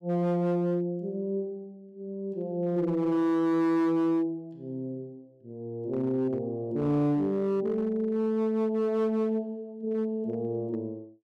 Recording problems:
distortion; hard clipping, signal-to-distortion ratio 12 dB

